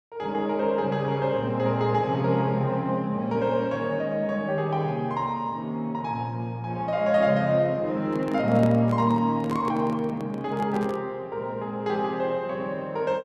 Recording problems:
handling noise; from 8 to 11 s; peak -5 dB vs average level

